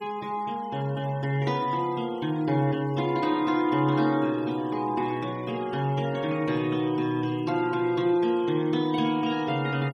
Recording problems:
denoising artefacts; signal-to-artefact ratio 22 dB

